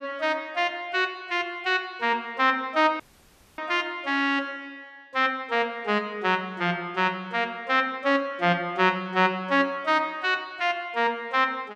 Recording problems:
dropout; at 3 s for 0.5 s

